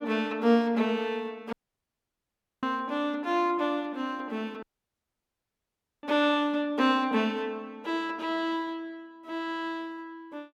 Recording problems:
audio cutting out; at 1.5 s for 1 s and at 4.5 s for 1.5 s

